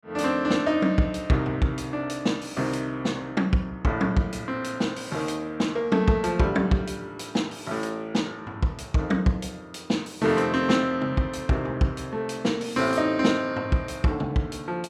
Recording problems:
none

